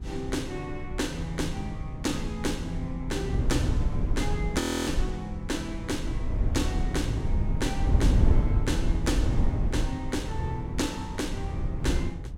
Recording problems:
low-frequency rumble; below 96 Hz, SNR 10 dB
wind noise; below 110 Hz, SNR -2 dB
audio freezing; at 4.5 s

